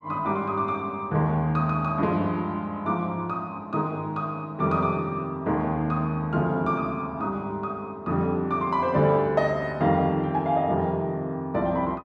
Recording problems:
none

